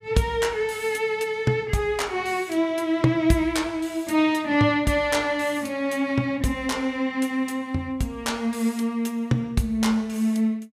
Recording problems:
none

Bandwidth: 15 kHz